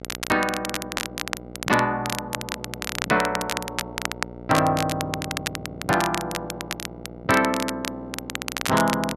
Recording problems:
electrical hum; 60 Hz, harmonics up to 1.4 kHz, SNR 15 dB
crackling; vinyl, SNR 6 dB

